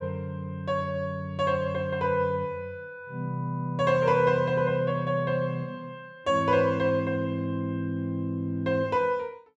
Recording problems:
none

